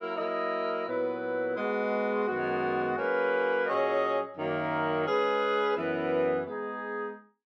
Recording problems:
none

